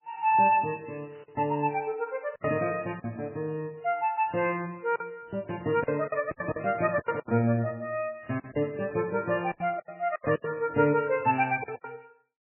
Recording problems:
lossy codec; MP3, log-spectral distance 3 dB, nothing above 2.4 kHz
packet loss; 9% of the sound replaced, filled with silence

